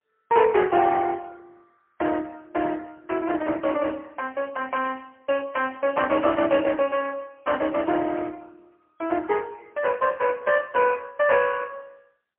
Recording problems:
telephone audio; 280 Hz to 3.1 kHz, AMR-NB, then MP3

